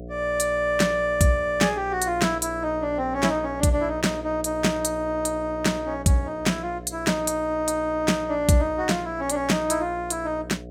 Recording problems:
hum; 60 Hz, harmonics up to 720 Hz, SNR 14 dB

